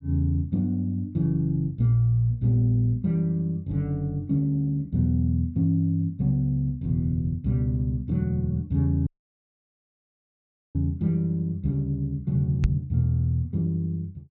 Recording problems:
audio cutting out; at 9 s for 1.5 s
microphone bump; at 13 s; peak +6 dB vs average level

